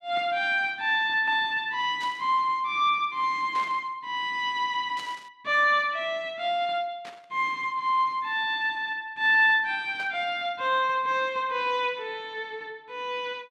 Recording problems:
burst of static; 5 times, first at 2 s; peak -12 dB vs average level

